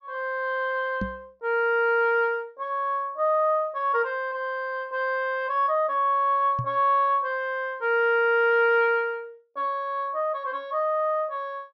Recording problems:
treble missing; nothing above 6.6 kHz
knock on the microphone; at 1 s and at 6.5 s; peak -2 dB vs average level

